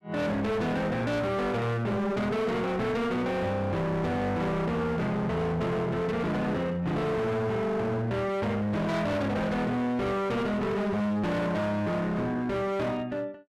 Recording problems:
distortion; hard clipping, signal-to-distortion ratio 7 dB

